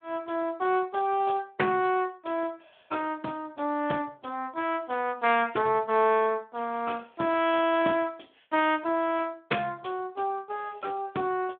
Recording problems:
phone line; 240 Hz to 3.4 kHz, Speex

